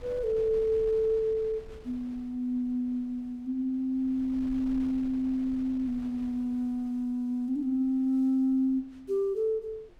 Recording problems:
wind on the microphone; below 260 Hz, SNR 22 dB

